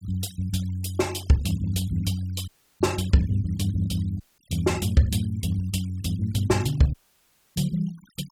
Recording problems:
noise reduction artefacts; signal-to-artefact ratio 21 dB
audio cutting out; at 2.5 s, at 4 s and at 7 s for 0.5 s

